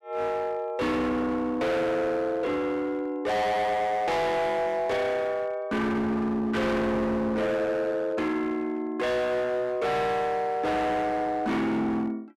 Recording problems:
distorted audio; hard clipping, signal-to-distortion ratio 7 dB

